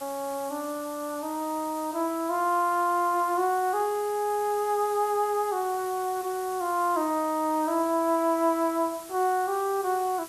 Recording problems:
background hiss; slope -1 dB per octave, SNR 16 dB

